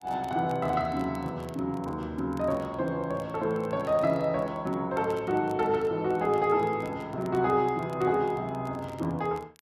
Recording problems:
crackle; vinyl, SNR 28 dB

